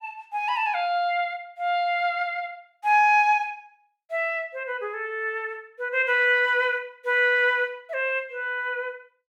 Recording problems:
none

